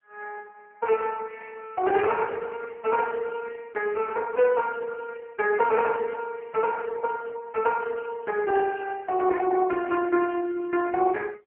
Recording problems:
phone line; 130 Hz to 2.1 kHz, AMR-NB

